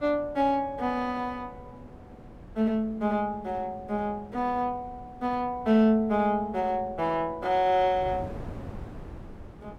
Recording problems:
wind on the microphone; below 360 Hz, SNR 18 dB

